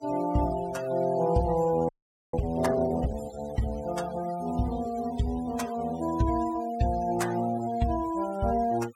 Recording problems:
denoising artefacts; signal-to-artefact ratio 17 dB
frozen audio; at 2 s

